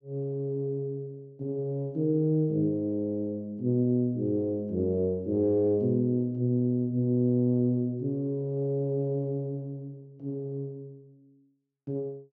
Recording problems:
none

